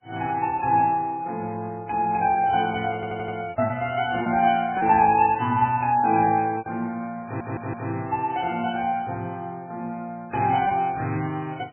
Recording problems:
lossy compression; MP3, then MP3, log-spectral distance 3 dB, nothing above 2.5 kHz
lost packets; 3% of the sound replaced, filled with repeated pitch periods
stutter; at 3 s and at 7 s

